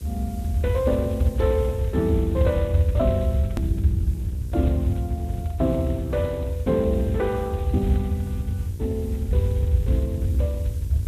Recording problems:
lossy compression; Speex, log-spectral distance 2 dB
electrical hum; 60 Hz, harmonics up to 1.1 kHz, SNR 20 dB
hiss; SNR 23 dB
low-frequency rumble; below 96 Hz, SNR -2 dB
click at an edit; at 3.5 s

